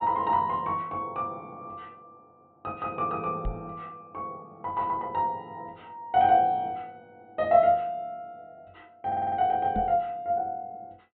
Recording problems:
treble cut off; nothing above 4 kHz
knock on the microphone; at 3.5 s and at 10 s; peak -2 dB vs average level
stutter; at 9 s

